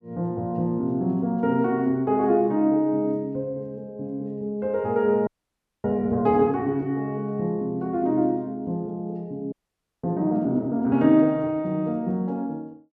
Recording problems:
audio freezing; at 5.5 s for 0.5 s and at 9.5 s for 0.5 s

